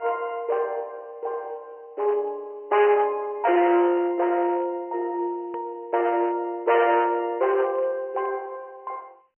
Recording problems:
phone line; 300 Hz to 3.1 kHz, G.711
distorted audio; hard clipping, uneven, signal-to-distortion ratio 11 dB
hard cut with a click; at 5.5 s

